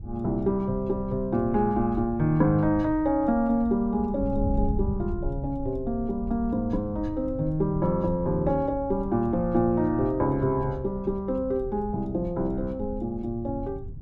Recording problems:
wind on the microphone; below 100 Hz, SNR 11 dB

